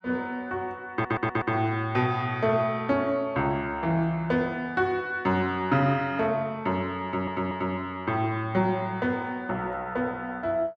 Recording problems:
audio stuttering; at 1 s and at 7 s

